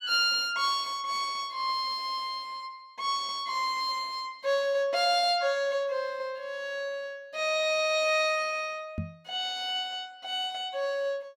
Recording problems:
knock on the microphone; at 9 s; peak -1 dB vs average level

